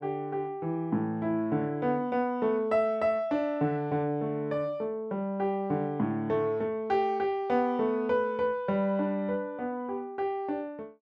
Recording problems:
none

